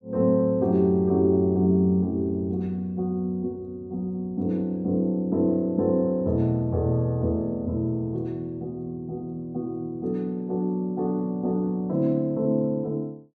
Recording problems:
none

